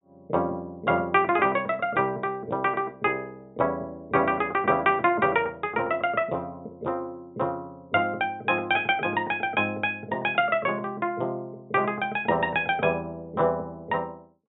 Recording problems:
low-pass filter; nothing above 4 kHz

